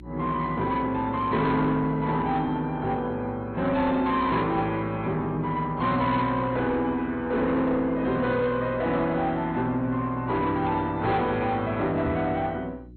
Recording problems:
codec artefacts; AAC, then MP2, log-spectral distance 2 dB, nothing above 4.2 kHz
distortion; soft clipping, signal-to-distortion ratio 12 dB
electrical hum; 60 Hz, harmonics up to 360 Hz, SNR 20 dB
microphone thump; at 12 s; peak -1 dB vs average level

